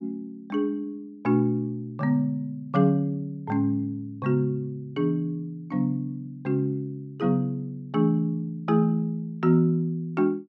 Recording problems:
none

